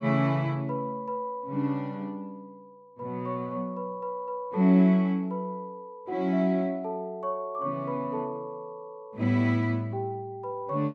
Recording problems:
none

